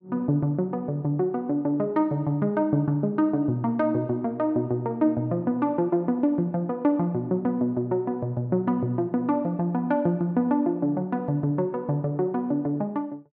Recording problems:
none

